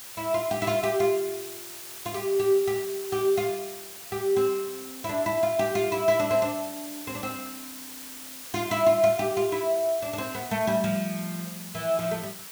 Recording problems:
background hiss; slope +1 dB per octave, SNR 12 dB

